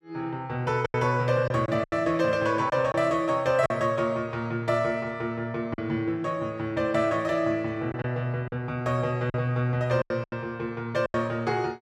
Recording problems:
lost packets; 6% of the sound replaced, filled with silence

